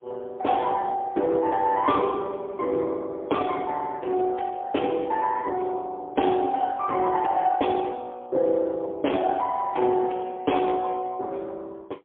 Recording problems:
phone line; 280 Hz to 3.4 kHz, AMR-NB, then MP3

